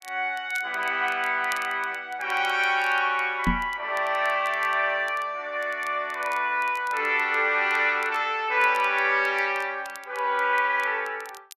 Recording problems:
crackling; vinyl, SNR 24 dB
knock on the microphone; at 3.5 s; peak +3 dB vs average level

